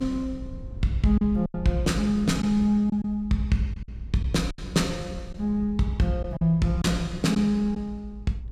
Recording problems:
rumble; below 88 Hz, SNR 14 dB
lost packets; 5% of the sound replaced, filled with silence

